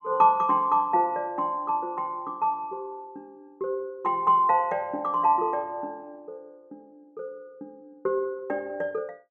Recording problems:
none

